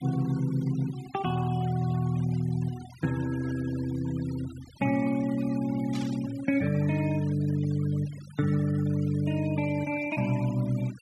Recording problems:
noise reduction artefacts; signal-to-artefact ratio 19 dB
burst of static; at 6 s; peak -10 dB vs average level

